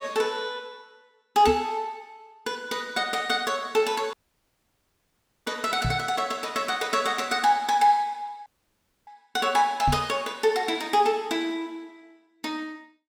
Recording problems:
microphone bump; at 1.5 s, at 6 s and at 10 s; peak +1 dB vs average level
dropout; at 4 s for 1.5 s and at 8.5 s for 0.5 s

